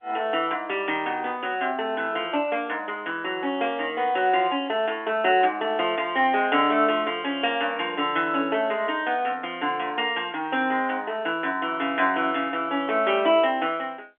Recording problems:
telephone audio; 240 Hz to 3.5 kHz, G.711

